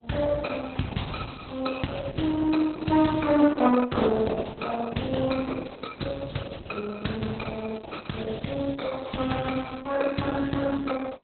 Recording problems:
lossy codec; Opus, log-spectral distance 6 dB, nothing above 4.1 kHz

